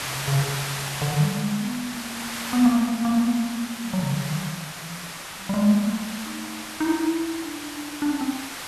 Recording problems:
hiss; SNR 7 dB

